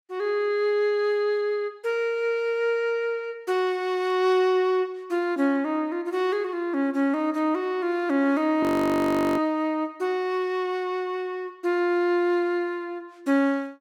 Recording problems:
frozen audio; at 8.5 s for 0.5 s

